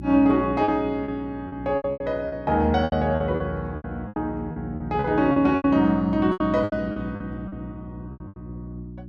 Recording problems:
hum; 60 Hz, harmonics up to 360 Hz, SNR 13 dB
packet loss; 15% of the sound replaced, filled with repeated pitch periods

